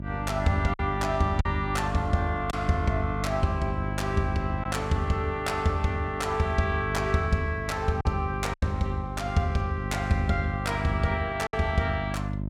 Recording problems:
electrical hum; 50 Hz, harmonics up to 650 Hz, SNR 6 dB
lost packets; 2% of the sound replaced, filled with silence

